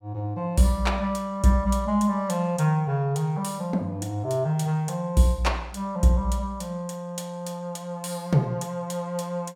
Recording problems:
none

